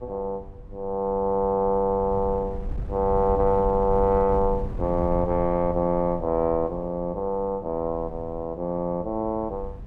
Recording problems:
wind on the microphone; below 94 Hz, SNR 12 dB

